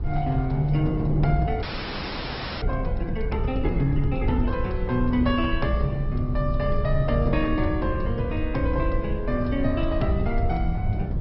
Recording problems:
treble cut off; nothing above 5.4 kHz
codec artefacts; Opus, log-spectral distance 2 dB
rumble; below 88 Hz, SNR 4 dB
wind noise; below 370 Hz, SNR 14 dB
frozen audio; at 1.5 s for 1 s

